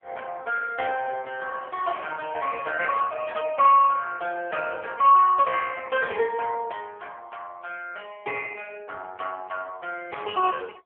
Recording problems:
telephone audio; 370 Hz to 3.1 kHz, AMR-NB

